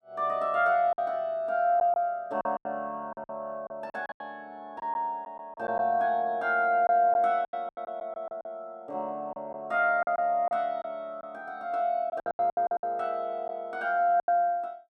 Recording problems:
lost packets; 10% of the sound replaced, filled with silence

